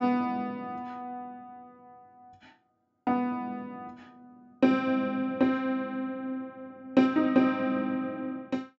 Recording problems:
low-pass filter; nothing above 8 kHz

